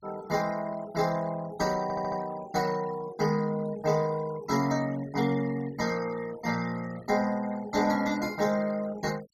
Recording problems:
denoising artefacts; signal-to-artefact ratio 17 dB
stutter; at 2 s

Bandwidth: 16.5 kHz